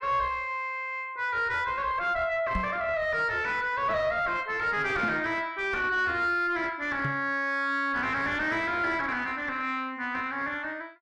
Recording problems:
distortion; soft clipping, signal-to-distortion ratio 8 dB
microphone thump; at 2.5 s, at 5 s and at 7 s; peak 0 dB vs average level

